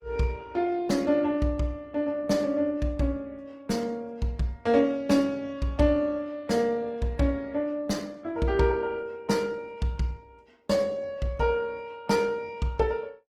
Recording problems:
lossy compression; Opus, log-spectral distance 2 dB, nothing above 19 kHz

